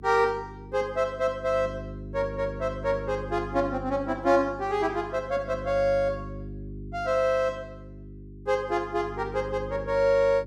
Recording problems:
hum; 50 Hz, harmonics up to 400 Hz, SNR 13 dB

